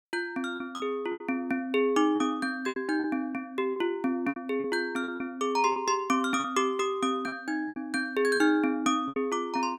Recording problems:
packet loss; 9% of the sound replaced, filled with repeated pitch periods

